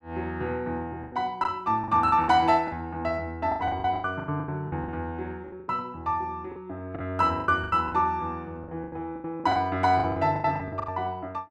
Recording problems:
packet loss; 15% of the sound replaced, filled with the last packet

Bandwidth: 13 kHz